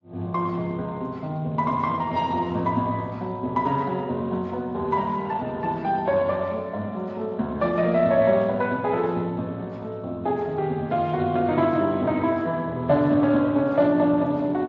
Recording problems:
lossy compression; AAC, then Speex, log-spectral distance 2 dB

